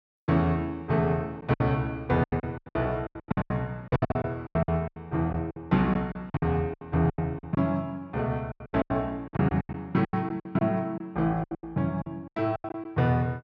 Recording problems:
packet loss; 18% of the sound replaced, filled with silence

